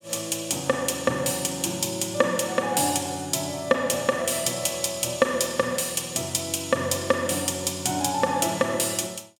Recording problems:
none

